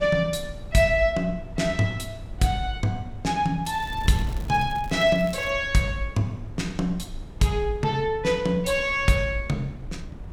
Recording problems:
wind noise; below 120 Hz, SNR 15 dB
crackling; from 3.5 to 5.5 s; loose cable, SNR 24 dB

